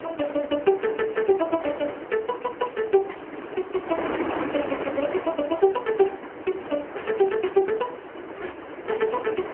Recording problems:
phone line; 240 Hz to 2.9 kHz, AMR-NB
wind on the microphone; below 1.1 kHz, SNR 9 dB

